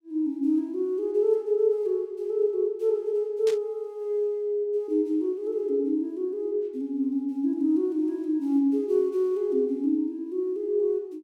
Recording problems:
static burst; at 3.5 s; peak -9 dB vs average level

